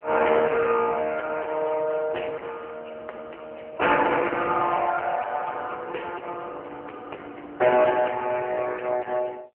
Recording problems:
telephone audio; 340 Hz to 3 kHz, AMR-NB
distorted audio; hard clipping, uneven, signal-to-distortion ratio 8 dB

